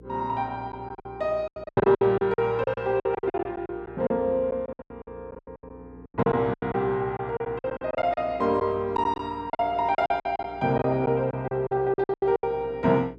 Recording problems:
hum; 60 Hz, harmonics up to 480 Hz, SNR 22 dB
packet loss; 18% of the sound replaced, filled with silence

